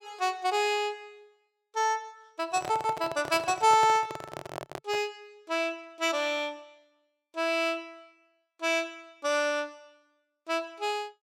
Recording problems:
handling noise; from 2.5 to 5 s; peak -5 dB vs average level

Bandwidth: 16.5 kHz